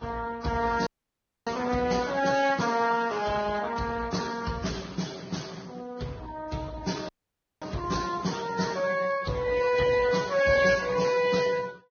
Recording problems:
lossy compression; Speex, then Vorbis, log-spectral distance 5 dB, nothing above 6.5 kHz
dropout; at 1 s for 0.5 s and at 7 s for 0.5 s

